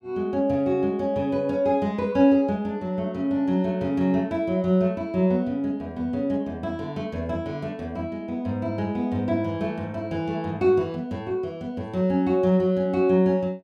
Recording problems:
none

